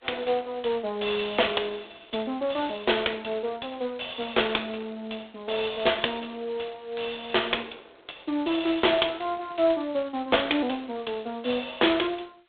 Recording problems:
phone line; 300 Hz to 3.6 kHz, G.726

